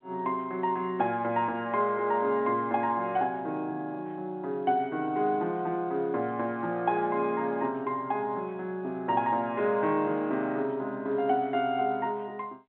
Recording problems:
telephone audio; 240 Hz to 3.8 kHz, G.711

